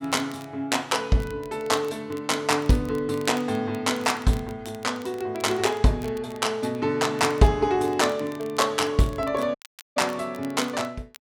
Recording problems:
crackling; vinyl, SNR 24 dB
audio cutting out; at 9.5 s

